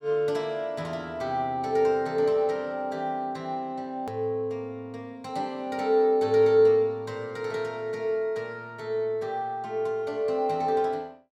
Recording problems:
hard cut with a click; at 4 s

